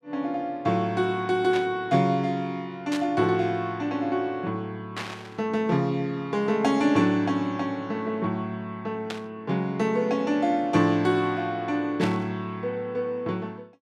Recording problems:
static burst; 5 times, first at 1.5 s; peak -4 dB vs average level

